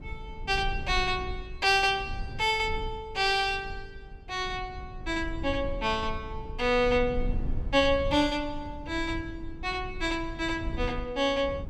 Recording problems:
rumble; below 74 Hz, SNR 11 dB

